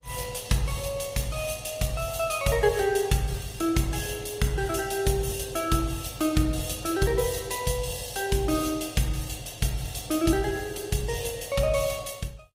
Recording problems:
codec artefacts; Opus, log-spectral distance 6 dB, nothing above 15.5 kHz

